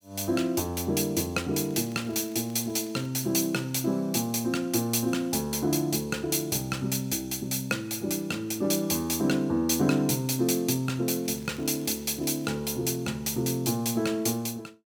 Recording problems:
crackling; from 1.5 to 3 s and from 11 to 12 s; loose cable, SNR 27 dB

